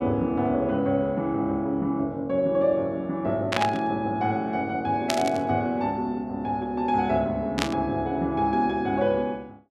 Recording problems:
burst of static; at 3.5 s, at 5 s and at 7.5 s; peak +4 dB vs average level

